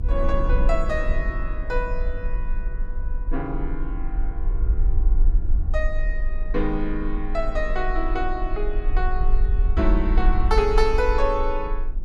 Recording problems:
rumble; below 44 Hz, strongest tone 20 Hz, SNR -1 dB
wind on the microphone; below 250 Hz, SNR 13 dB

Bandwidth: 14.5 kHz